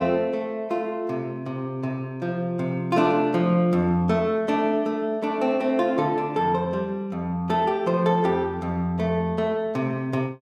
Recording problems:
none

